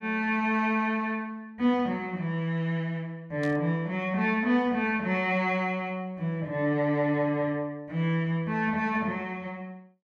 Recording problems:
burst of static; at 3.5 s; peak -11 dB vs average level

